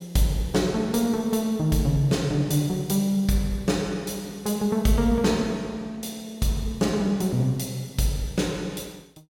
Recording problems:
none

